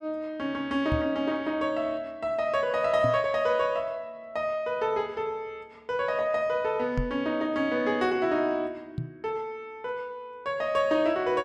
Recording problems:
microphone thump; 4 times, first at 1 s; peak +2 dB vs average level

